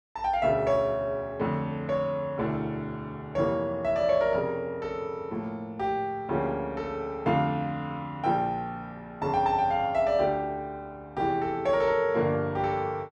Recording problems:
none

